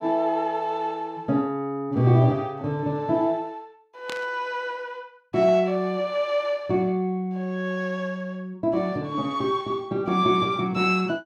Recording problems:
static burst; at 4 s; peak -6 dB vs average level

